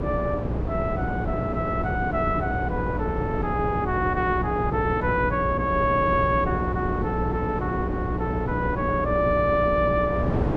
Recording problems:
electrical hum; 60 Hz, harmonics up to 420 Hz, SNR 6 dB
wind noise; below 470 Hz, SNR 5 dB

